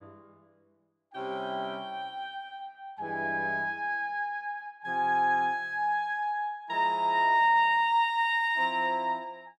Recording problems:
none

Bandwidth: 12.5 kHz